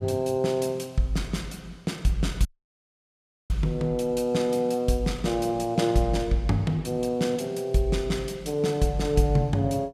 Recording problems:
audio cutting out; at 2.5 s for 1 s

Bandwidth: 14.5 kHz